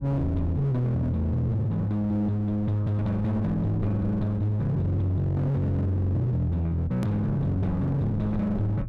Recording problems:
distortion; hard clipping, signal-to-distortion ratio 10 dB
rumble; below 110 Hz, SNR 15 dB
click at an edit; at 7 s

